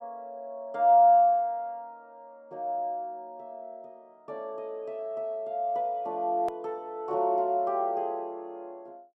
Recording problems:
edit click; at 6.5 s

